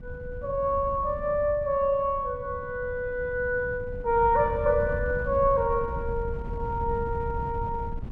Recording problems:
wind noise; below 120 Hz, SNR 10 dB

